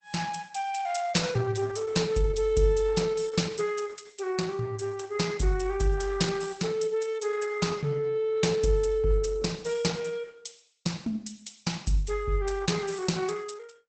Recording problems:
lossy compression; Opus, log-spectral distance 5 dB, nothing above 8 kHz

